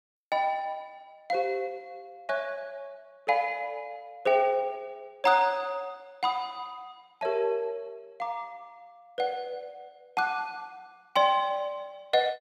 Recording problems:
none

